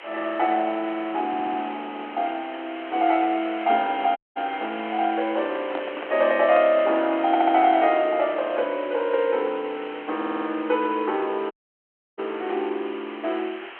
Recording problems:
phone line; 260 Hz to 3.3 kHz, G.726
background hiss; SNR 16 dB
audio stuttering; at 1.5 s, at 7.5 s and at 10 s
dropout; at 4 s and at 12 s for 0.5 s
microphone handling noise; from 5.5 to 7 s; peak -4 dB vs average level

